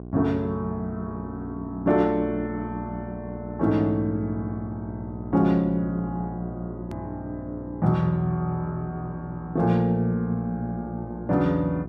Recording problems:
hum; 60 Hz, harmonics up to 1.1 kHz, SNR 11 dB
hard cut with a click; at 7 s

